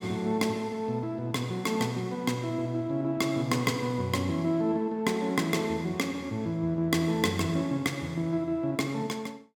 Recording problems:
none

